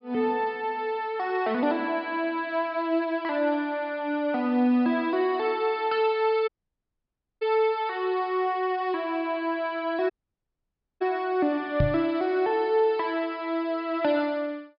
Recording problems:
treble missing; nothing above 5.5 kHz
dropout; at 6.5 s for 1 s and at 10 s for 1 s
microphone thump; at 12 s; peak +5 dB vs average level

